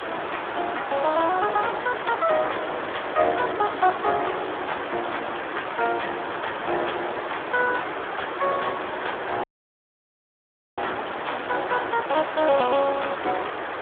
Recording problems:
phone line; 260 Hz to 3.6 kHz, Speex
distorted audio; soft clipping, signal-to-distortion ratio 11 dB
background hiss; SNR 5 dB
wind noise; below 620 Hz, SNR 21 dB
audio cutting out; at 9.5 s for 1.5 s

